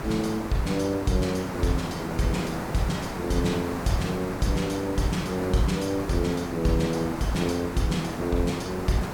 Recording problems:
background hiss; SNR 6 dB

